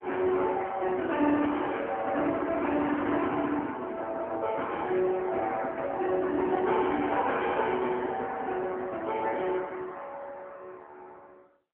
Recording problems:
phone line; 220 Hz to 3.1 kHz, AMR-NB

